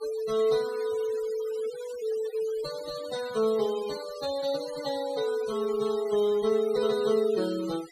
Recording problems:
noise reduction artefacts; signal-to-artefact ratio 17 dB

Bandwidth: 14.5 kHz